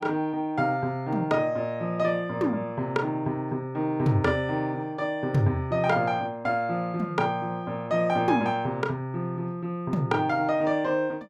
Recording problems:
none

